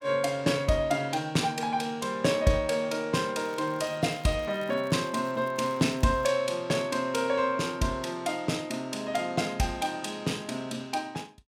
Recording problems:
crackle; from 3.5 to 6.5 s; loose cable, SNR 27 dB

